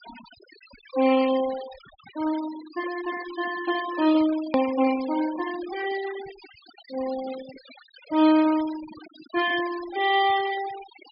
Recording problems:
treble cut off; nothing above 5.5 kHz
noise reduction artefacts; signal-to-artefact ratio 16 dB
click at an edit; at 4.5 s

